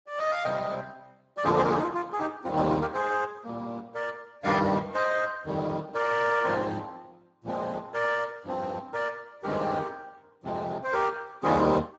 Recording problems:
lossy compression; Speex, log-spectral distance 4 dB, nothing above 7.3 kHz

